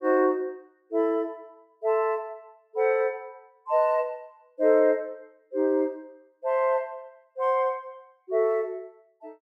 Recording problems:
none

